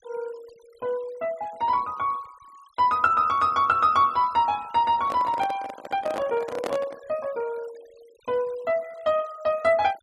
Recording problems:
noise reduction artefacts; signal-to-artefact ratio 26 dB
microphone handling noise; from 5 to 7 s; peak -2 dB vs average level

